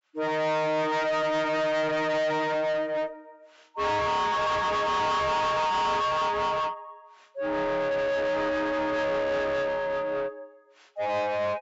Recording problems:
treble missing; nothing above 8 kHz
distorted audio; soft clipping, signal-to-distortion ratio 6 dB

